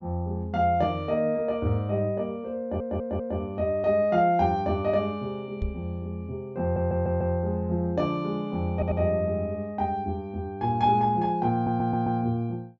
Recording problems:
low-pass filter; nothing above 7.3 kHz
audio stuttering; 4 times, first at 2.5 s
microphone thump; at 5.5 s; peak -1 dB vs average level

